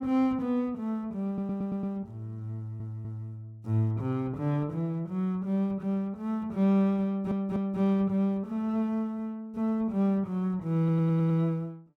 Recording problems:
audio stuttering; 4 times, first at 1.5 s

